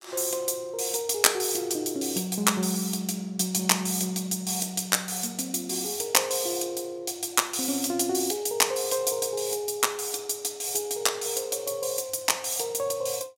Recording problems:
none

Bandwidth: 16 kHz